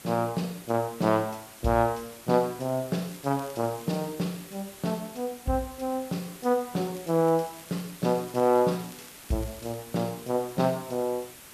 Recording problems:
hiss; slope -2 dB per octave, SNR 17 dB
crackle; from 3 to 4 s and from 7 to 10 s; loose cable, SNR 24 dB

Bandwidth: 14 kHz